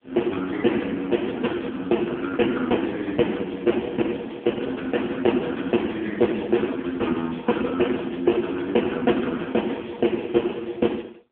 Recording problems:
phone line; 220 Hz to 3.4 kHz, AMR-NB

